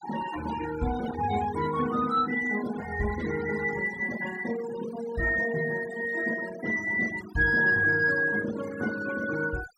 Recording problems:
noise reduction artefacts; signal-to-artefact ratio 12 dB

